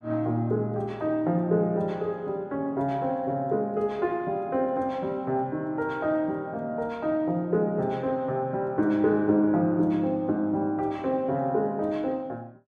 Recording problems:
none

